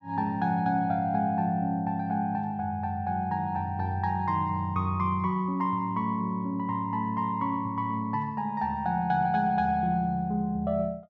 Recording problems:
none

